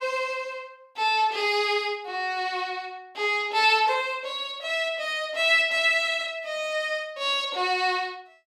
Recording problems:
none

